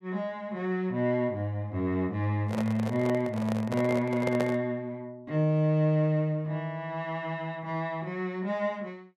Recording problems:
microphone handling noise; from 2.5 to 4.5 s; peak +1 dB vs average level

